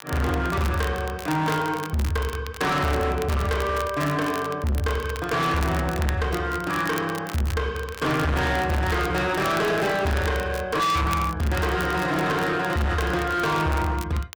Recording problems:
distorted audio; hard clipping, signal-to-distortion ratio 7 dB
crackle; vinyl, SNR 15 dB

